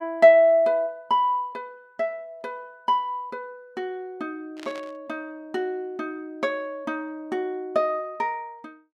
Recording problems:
static burst; at 4.5 s; peak -13 dB vs average level

